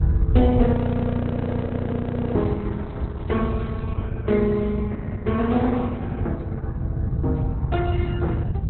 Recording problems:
lossy compression; Opus, log-spectral distance 2 dB, nothing above 4 kHz
rumble; below 110 Hz, SNR -2 dB
audio freezing; at 0.5 s for 1.5 s
crackling; from 2.5 to 4 s; loose cable, SNR 30 dB

